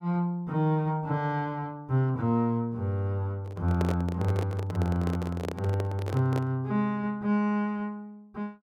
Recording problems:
handling noise; from 3.5 to 6.5 s; peak -1 dB vs average level

